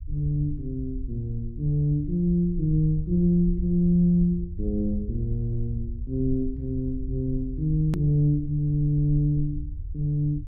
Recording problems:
rumble; below 70 Hz, SNR 10 dB
click at an edit; at 8 s

